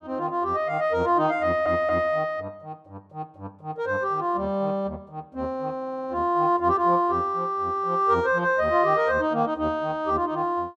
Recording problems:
audio stuttering; at 1.5 s and at 6 s

